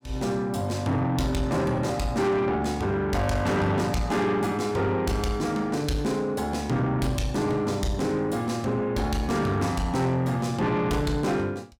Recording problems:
distortion; soft clipping, signal-to-distortion ratio 10 dB

